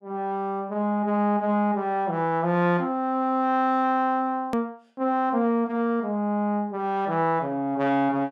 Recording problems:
hard cut with a click; at 4.5 s

